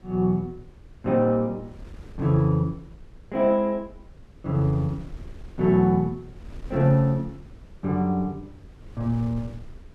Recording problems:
wind noise; below 130 Hz, SNR 21 dB

